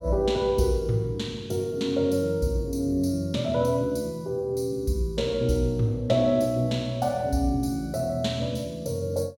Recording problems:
none

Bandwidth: 17 kHz